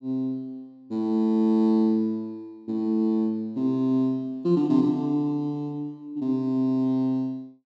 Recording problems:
none

